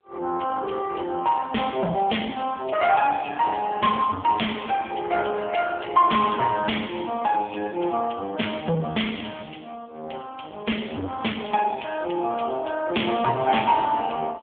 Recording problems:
phone line; 260 Hz to 3.4 kHz, AMR-NB
distortion; soft clipping, signal-to-distortion ratio 10 dB

